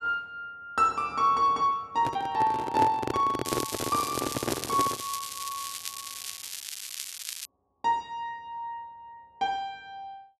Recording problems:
handling noise; from 2 to 5 s; peak +4 dB vs average level
crackle; from 3.5 to 7.5 s; loose cable, SNR 7 dB

